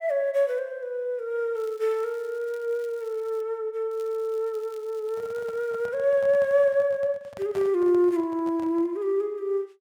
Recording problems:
crackle; from 1.5 to 3.5 s and from 4 to 6 s; loose cable, SNR 30 dB
handling noise; from 5 to 9 s; peak -10 dB vs average level

